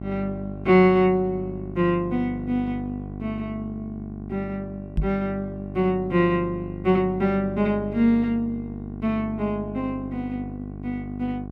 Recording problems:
hum; 50 Hz, harmonics up to 1.1 kHz, SNR 11 dB
microphone bump; at 5 s; peak +3 dB vs average level

